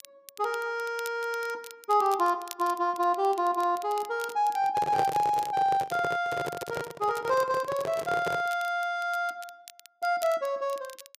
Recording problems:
crackle; vinyl, SNR 19 dB
microphone handling noise; from 4.5 to 8.5 s; peak +1 dB vs average level

